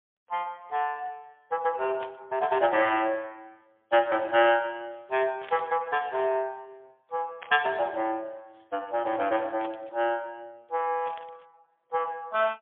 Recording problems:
phone line; 340 Hz to 3.5 kHz, AMR-NB, then MP3
burst of static; 5 times, first at 2 s; peak -9 dB vs average level

